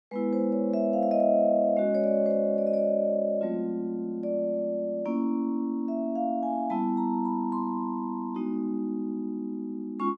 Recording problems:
none

